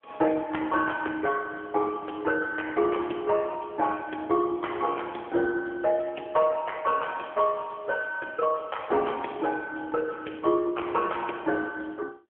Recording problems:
phone line; 240 Hz to 3.2 kHz, AMR-NB

